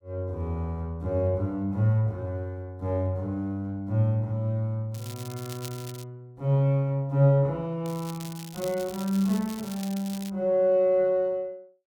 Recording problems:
crackling; from 5 to 6 s and from 8 to 10 s; loose cable, SNR 16 dB

